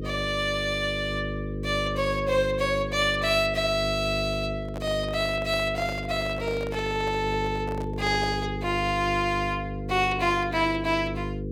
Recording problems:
electrical hum; 50 Hz, harmonics up to 500 Hz, SNR 7 dB
handling noise; from 4.5 to 8.5 s; peak -8 dB vs average level

